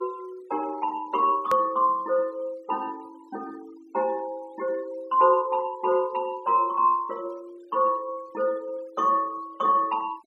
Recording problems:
noise reduction artefacts; signal-to-artefact ratio 27 dB
click at an edit; at 1.5 s

